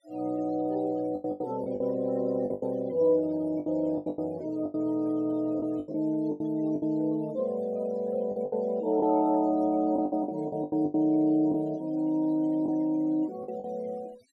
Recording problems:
denoising artefacts; signal-to-artefact ratio 26 dB
packet loss; 10% of the sound replaced, filled with the last packet

